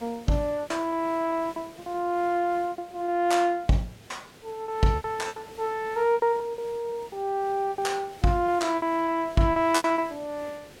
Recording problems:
hiss; SNR 22 dB
packet loss; 12% of the sound replaced, filled with repeated pitch periods

